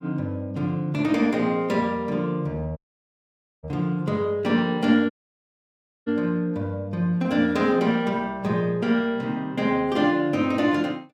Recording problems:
audio cutting out; at 3 s for 1 s and at 5 s for 1 s

